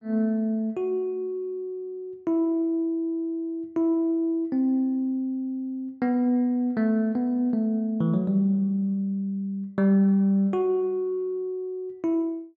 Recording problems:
none

